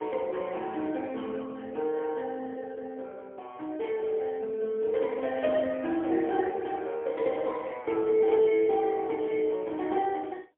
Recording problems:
telephone audio; 220 Hz to 3.1 kHz, AMR-NB, then MP3

